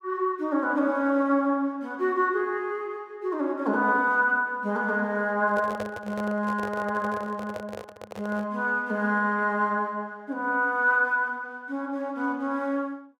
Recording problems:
handling noise; from 5.5 to 8.5 s; peak -4 dB vs average level

